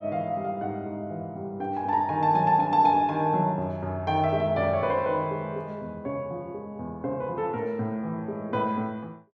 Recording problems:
none

